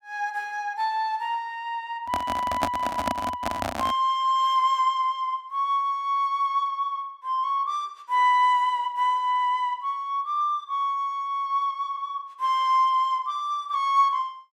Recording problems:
microphone handling noise; from 2 to 4 s; peak +4 dB vs average level

